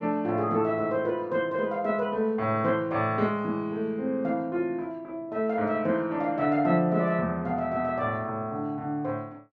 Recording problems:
none

